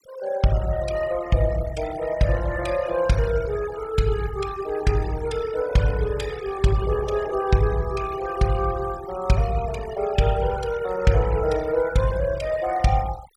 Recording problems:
noise reduction artefacts; signal-to-artefact ratio 16 dB

